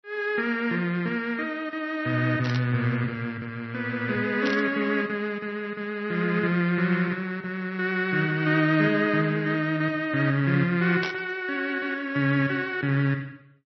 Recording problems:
lossy compression; MP3, log-spectral distance 2 dB, nothing above 5.2 kHz
burst of static; at 2.5 s, at 4.5 s and at 11 s; peak -4 dB vs average level

